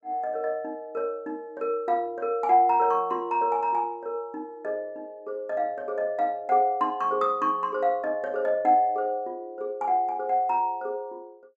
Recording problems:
none

